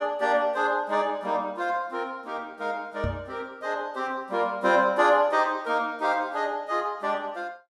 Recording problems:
microphone thump; at 3 s; peak -1 dB vs average level

